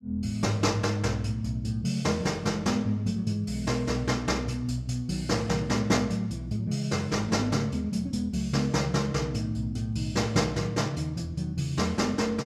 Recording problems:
none

